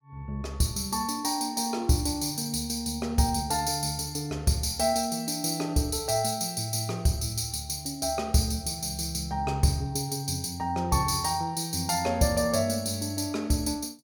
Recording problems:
none

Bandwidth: 18 kHz